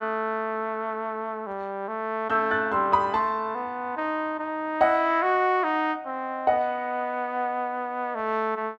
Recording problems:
none

